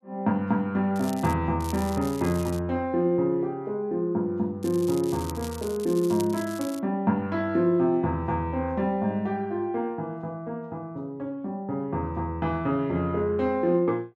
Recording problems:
crackle; at 1 s, from 1.5 to 2.5 s and from 4.5 to 7 s; loose cable, SNR 16 dB

